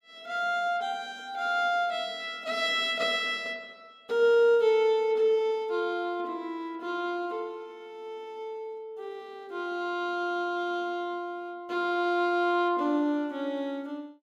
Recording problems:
none

